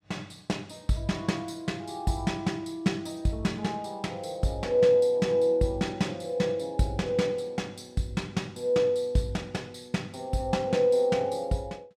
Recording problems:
none

